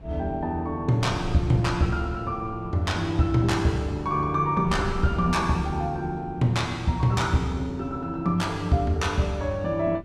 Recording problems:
wind noise; below 160 Hz, SNR 15 dB

